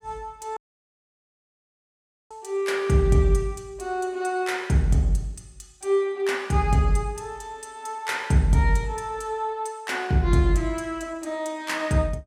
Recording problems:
audio cutting out; at 0.5 s for 1.5 s

